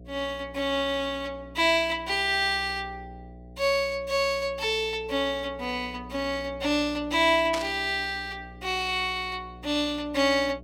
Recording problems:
hum; 60 Hz, harmonics up to 720 Hz, SNR 20 dB
static burst; at 7.5 s; peak -2 dB vs average level

